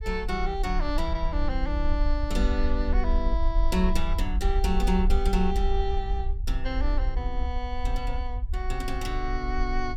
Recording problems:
low-frequency rumble; below 52 Hz, SNR -1 dB

